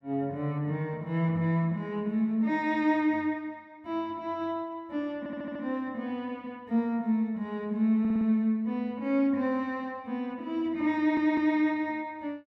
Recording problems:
stutter; at 5 s, at 8 s and at 11 s

